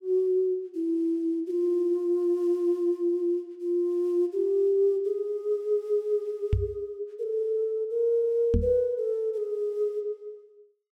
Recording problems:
knock on the microphone; at 6.5 s and at 8.5 s; peak +6 dB vs average level

